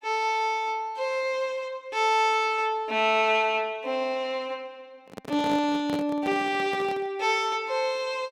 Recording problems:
microphone handling noise; from 5 to 7 s; peak -4 dB vs average level

